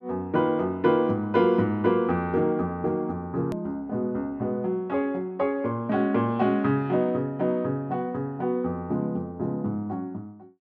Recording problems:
edit click; at 3.5 s

